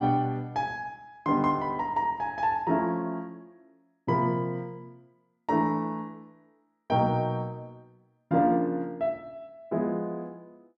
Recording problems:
none

